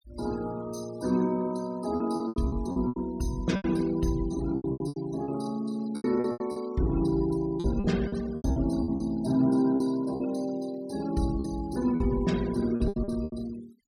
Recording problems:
denoising artefacts; signal-to-artefact ratio 18 dB
packet loss; 12% of the sound replaced, filled with repeated pitch periods

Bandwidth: 16.5 kHz